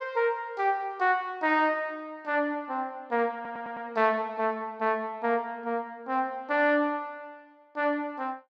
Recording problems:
audio stuttering; at 3.5 s

